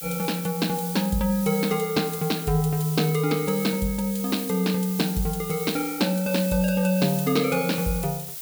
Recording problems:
hiss; slope +3 dB per octave, SNR 9 dB

